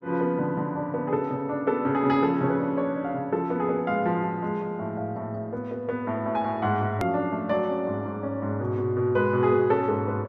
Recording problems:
edit click; at 7 s

